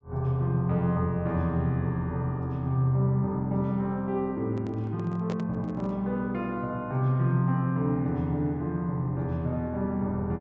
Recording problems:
treble cut off; nothing above 8 kHz
handling noise; from 4.5 to 6 s; peak -5 dB vs average level

